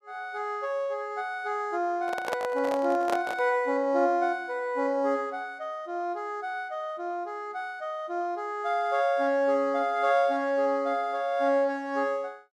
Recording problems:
handling noise; from 2 to 3.5 s; peak +1 dB vs average level

